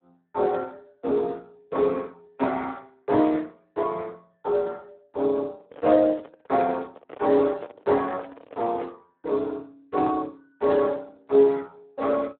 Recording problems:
telephone audio; 240 Hz to 2 kHz, Speex
handling noise; from 5.5 to 9 s; peak -9 dB vs average level

